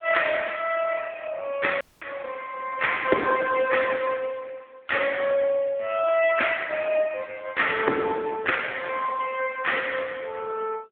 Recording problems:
telephone audio; 260 Hz to 3.4 kHz, AMR-NB
audio cutting out; at 2 s

